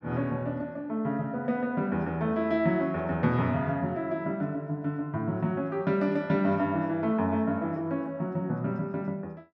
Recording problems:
none

